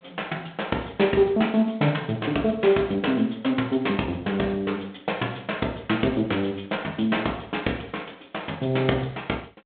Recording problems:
phone line; 240 Hz to 3.6 kHz, G.726

